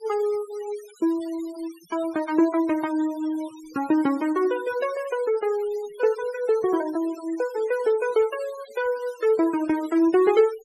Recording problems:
denoising artefacts; signal-to-artefact ratio 20 dB

